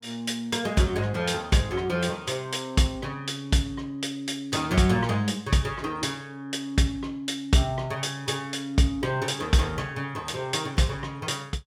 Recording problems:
none

